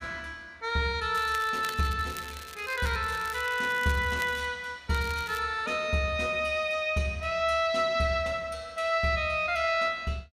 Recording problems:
crackling; from 1 to 4.5 s and at 5 s; loose cable, SNR 16 dB

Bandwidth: 15 kHz